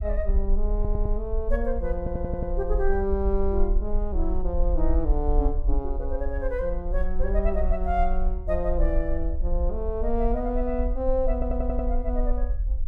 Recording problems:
rumble; below 48 Hz, SNR 0 dB
stutter; at 0.5 s, at 2 s and at 11 s

